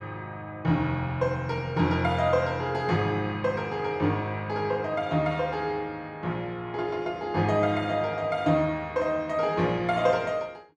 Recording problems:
none

